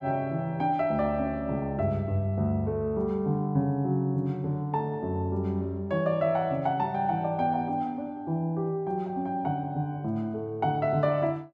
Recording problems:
none

